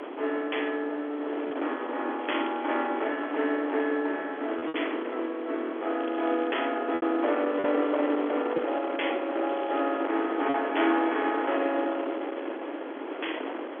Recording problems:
telephone audio; 260 Hz to 3.4 kHz, G.711
distorted audio; hard clipping, uneven, signal-to-distortion ratio 14 dB
wind on the microphone; below 960 Hz, SNR 6 dB
packet loss; 2% of the sound replaced, filled with repeated pitch periods
crackling; at 2 s, at 6 s and at 9.5 s; loose cable, SNR 21 dB

